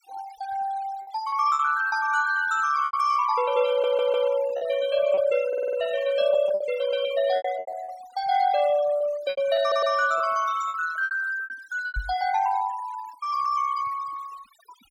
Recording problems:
noise reduction artefacts; signal-to-artefact ratio 16 dB
packet loss; 8% of the sound replaced, filled with repeated pitch periods
stutter; at 3.5 s, at 5.5 s and at 9.5 s
microphone thump; at 12 s; peak -4 dB vs average level

